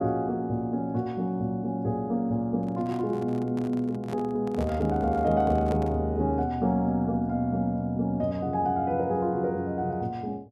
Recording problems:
microphone handling noise; from 2.5 to 6 s; peak -7 dB vs average level

